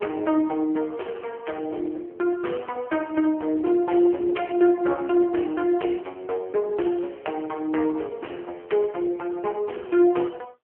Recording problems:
telephone audio; 280 Hz to 3.2 kHz, AMR-NB

